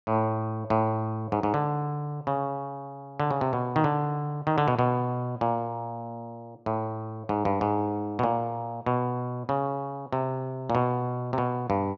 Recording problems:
none

